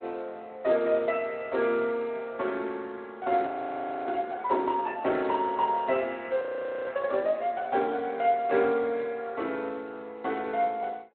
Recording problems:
telephone audio; 260 Hz to 3.8 kHz, Speex
audio freezing; at 3.5 s for 0.5 s and at 6.5 s

